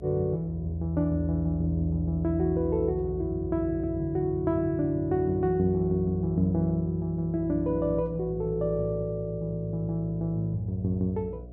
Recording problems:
hum; 60 Hz, harmonics up to 720 Hz, SNR 13 dB

